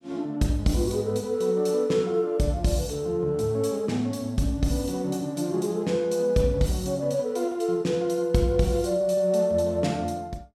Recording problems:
none

